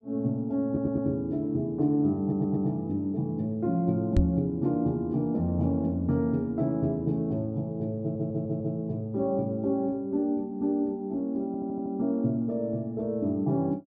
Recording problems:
stutter; 4 times, first at 0.5 s
microphone thump; at 4 s; peak +7 dB vs average level

